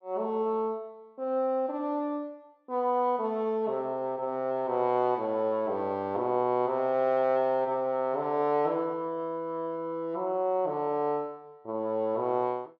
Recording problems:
none

